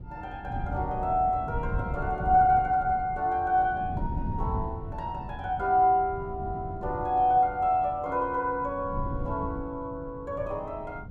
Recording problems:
wind on the microphone; below 160 Hz, SNR 10 dB

